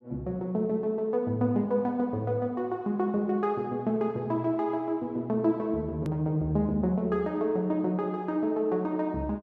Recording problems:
click at an edit; at 6 s

